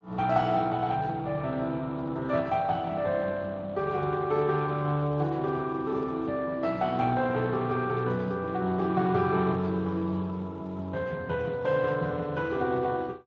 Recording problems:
codec artefacts; Speex, log-spectral distance 3 dB

